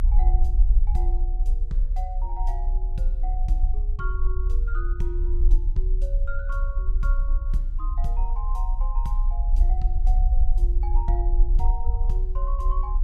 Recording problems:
low-frequency rumble; below 46 Hz, strongest tone 30 Hz, SNR -12 dB

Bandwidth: 14.5 kHz